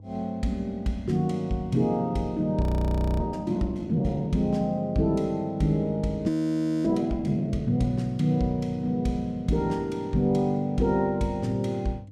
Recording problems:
electrical hum; 50 Hz, harmonics up to 500 Hz, SNR 20 dB
audio freezing; at 2.5 s for 0.5 s and at 6.5 s for 0.5 s

